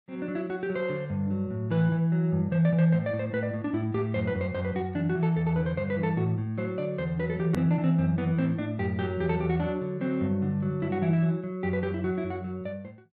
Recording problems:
edit click; at 7.5 s

